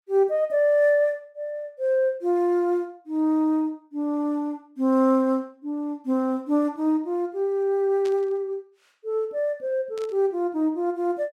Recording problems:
burst of static; at 8 s and at 10 s; peak -13 dB vs average level

